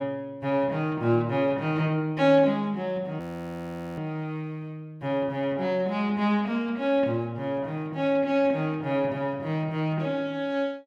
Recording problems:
frozen audio; at 3 s for 1 s

